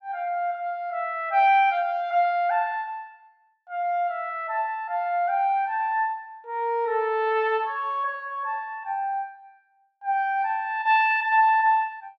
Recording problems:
none

